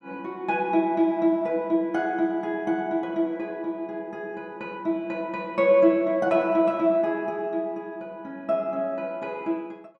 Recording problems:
none

